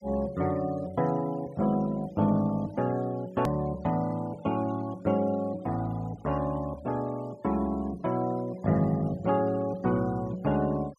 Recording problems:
noise reduction artefacts; signal-to-artefact ratio 23 dB
click at an edit; at 3.5 s

